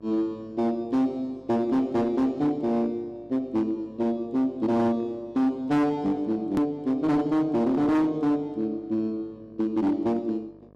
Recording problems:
distorted audio; hard clipping, signal-to-distortion ratio 10 dB
hum; 50 Hz, harmonics up to 1.3 kHz, SNR 27 dB
hard cut with a click; at 6.5 s

